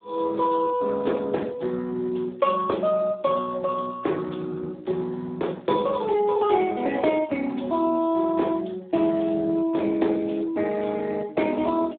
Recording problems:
telephone audio; 240 Hz to 3.7 kHz, Speex

